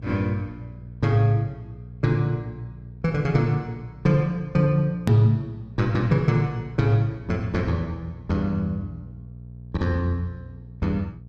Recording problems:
hum; 60 Hz, harmonics up to 480 Hz, SNR 17 dB
click at an edit; at 5 s

